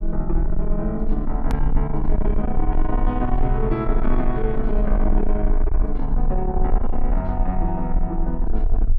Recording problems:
distortion; soft clipping, signal-to-distortion ratio 11 dB
low-frequency rumble; below 38 Hz, strongest tone 22 Hz, SNR 0 dB
click at an edit; at 1.5 s

